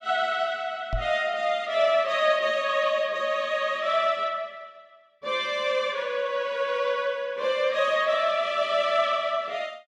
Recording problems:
knock on the microphone; at 1 s; peak -2 dB vs average level

